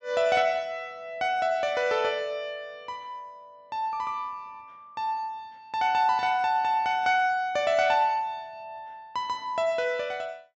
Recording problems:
treble missing; nothing above 8 kHz

